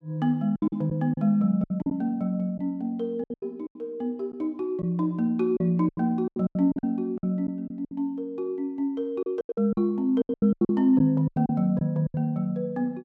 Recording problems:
lost packets; 13% of the sound replaced, filled with silence

